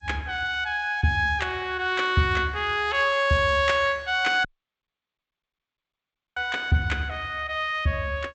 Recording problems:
codec artefacts; G.722, log-spectral distance 2 dB, nothing above 7.8 kHz
audio cutting out; at 4.5 s for 2 s

